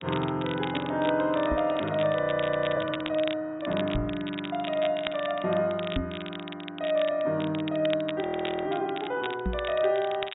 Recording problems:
treble missing; nothing above 4 kHz
crackling; vinyl, SNR 12 dB
microphone bump; 4 times, first at 1.5 s; peak +2 dB vs average level
audio freezing; at 2 s for 0.5 s and at 8 s

